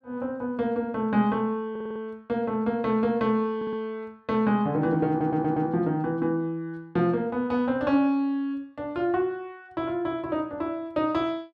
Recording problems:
stutter; at 1.5 s, at 3.5 s and at 5 s

